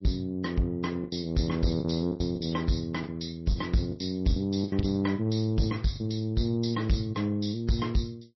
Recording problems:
lossy codec; MP3, log-spectral distance 4 dB, nothing above 5.7 kHz
distorted audio; soft clipping, signal-to-distortion ratio 12 dB
packet loss; 7% of the sound replaced, filled with the last packet

